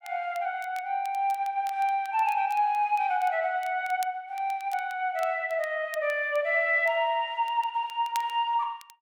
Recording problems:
crackle; vinyl, SNR 23 dB

